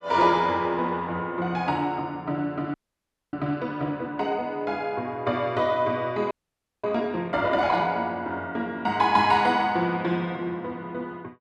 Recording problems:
frozen audio; at 2.5 s for 0.5 s and at 6.5 s for 0.5 s

